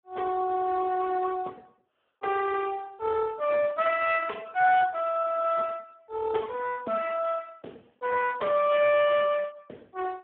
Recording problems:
phone line; 280 Hz to 3.2 kHz, Speex

